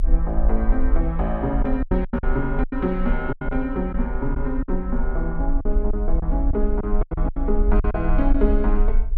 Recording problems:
rumble; below 48 Hz, strongest tone 24 Hz, SNR 0 dB
packet loss; 9% of the sound replaced, filled with silence

